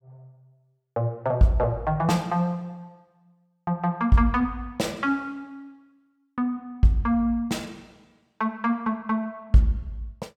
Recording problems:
none

